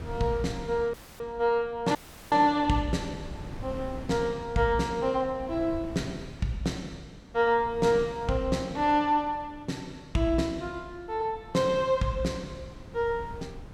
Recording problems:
wind noise; below 240 Hz, SNR 17 dB
audio cutting out; at 1 s and at 2 s

